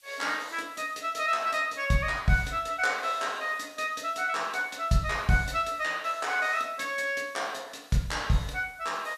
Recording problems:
background hiss; SNR 28 dB

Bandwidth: 14 kHz